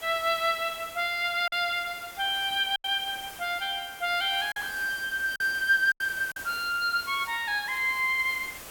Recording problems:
background hiss; slope -2 dB per octave, SNR 16 dB
packet loss; 4% of the sound replaced, filled with silence

